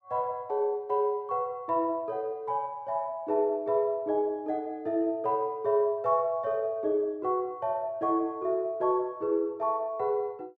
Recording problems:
none

